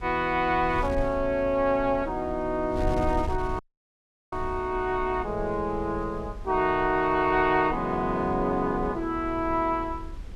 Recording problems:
wind noise; below 84 Hz, SNR 13 dB
audio cutting out; at 3.5 s for 0.5 s

